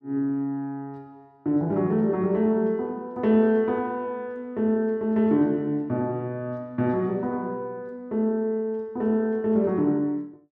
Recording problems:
none

